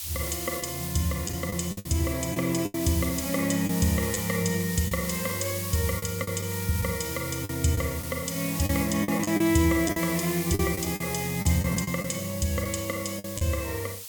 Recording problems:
background hiss; SNR 7 dB
lost packets; 7% of the sound replaced, filled with the last packet

